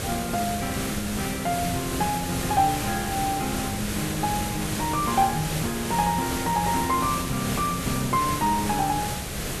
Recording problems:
hiss; SNR 3 dB

